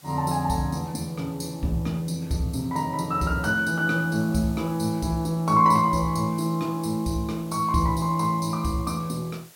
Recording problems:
background hiss; slope -1 dB per octave, SNR 24 dB

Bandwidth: 16.5 kHz